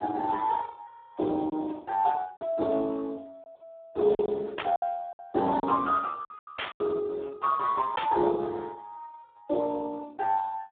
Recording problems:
telephone audio; 240 Hz to 2 kHz, Speex
packet loss; 5% of the sound replaced, filled with silence
static burst; at 4.5 s, at 6.5 s and at 8 s; peak +1 dB vs average level

